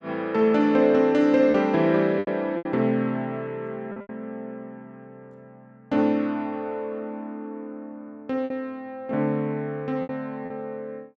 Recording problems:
lost packets; 5% of the sound replaced, filled with repeated pitch periods

